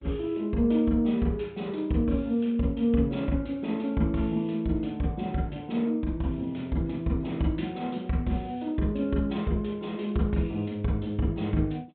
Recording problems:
treble missing; nothing above 3.8 kHz
lossy codec; G.722, log-spectral distance 2 dB

